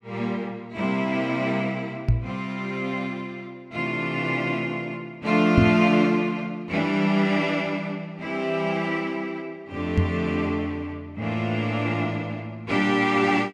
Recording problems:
microphone bump; at 2 s, at 5.5 s and at 10 s; peak +9 dB vs average level

